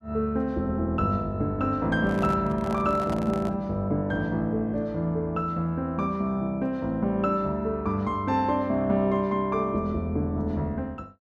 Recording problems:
handling noise; from 2 to 3.5 s; peak -6 dB vs average level

